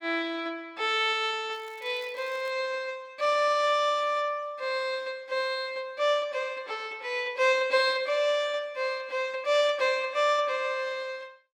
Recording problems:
crackling; at 1.5 s; loose cable, SNR 28 dB

